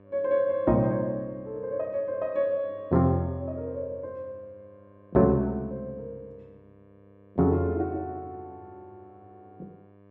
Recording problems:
mains hum; 50 Hz, harmonics up to 1.8 kHz, SNR 27 dB

